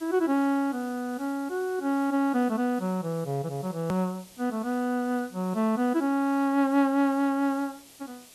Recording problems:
background hiss; SNR 23 dB
hard cut with a click; at 4 s

